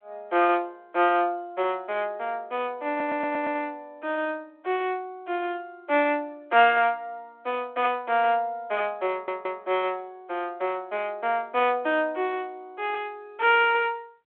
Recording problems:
telephone audio; 300 Hz to 3.7 kHz, G.726
stutter; at 3 s and at 9 s

